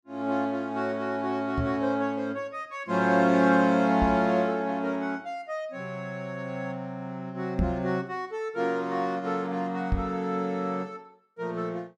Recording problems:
microphone bump; 4 times, first at 1.5 s; peak +3 dB vs average level

